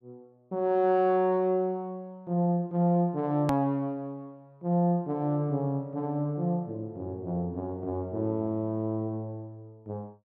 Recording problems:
edit click; at 3.5 s

